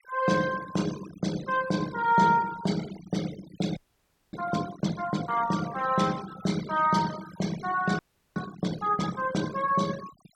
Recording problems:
noise reduction artefacts; signal-to-artefact ratio 15 dB
frozen audio; at 4 s for 0.5 s and at 8 s

